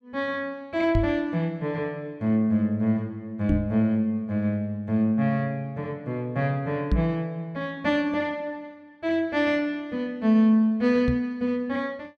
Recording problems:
microphone thump; 4 times, first at 1 s; peak +5 dB vs average level

